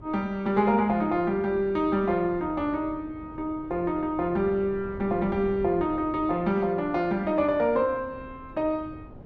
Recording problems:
wind noise; below 350 Hz, SNR 19 dB

